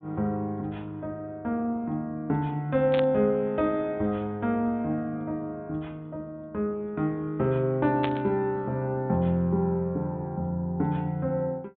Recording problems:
treble missing; nothing above 4 kHz
burst of static; at 3 s and at 8 s; peak -1 dB vs average level

